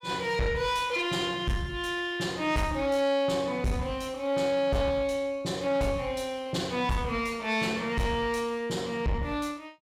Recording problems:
distortion; soft clipping, signal-to-distortion ratio 11 dB

